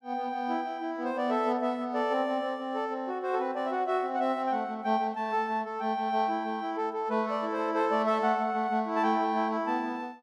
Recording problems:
none

